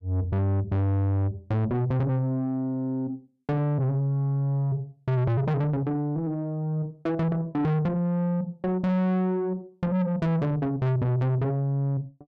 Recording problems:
distortion; soft clipping, signal-to-distortion ratio 7 dB

